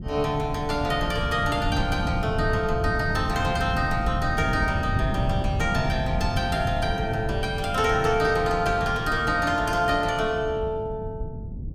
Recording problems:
low-frequency rumble; below 160 Hz, SNR 5 dB

